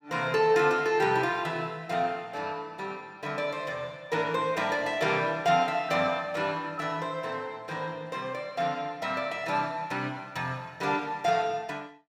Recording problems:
none

